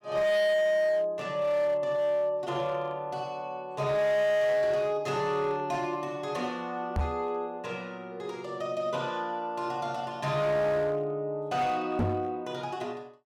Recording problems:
distorted audio; hard clipping, signal-to-distortion ratio 8 dB
microphone thump; at 7 s and at 12 s; peak +4 dB vs average level

